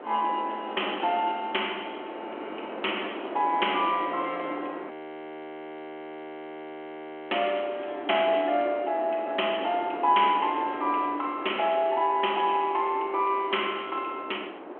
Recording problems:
phone line; 260 Hz to 3.3 kHz, G.726
wind on the microphone; below 880 Hz, SNR 10 dB
audio freezing; at 5 s for 2.5 s

